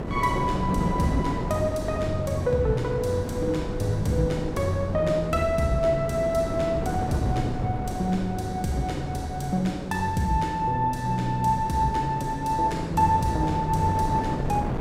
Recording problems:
wind noise; below 420 Hz, SNR 6 dB

